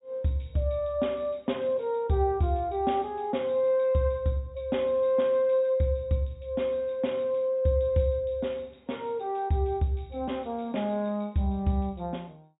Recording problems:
low-pass filter; nothing above 4 kHz

